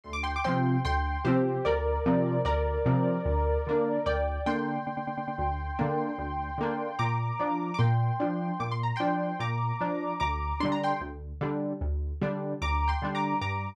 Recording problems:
audio stuttering; at 5 s

